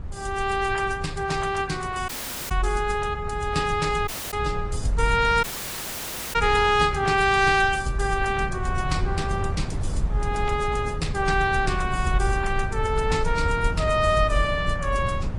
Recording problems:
lossy codec; AAC, then MP3, log-spectral distance 3 dB
wind on the microphone; below 110 Hz, SNR 7 dB
audio cutting out; at 2 s, at 4 s and at 5.5 s for 1 s

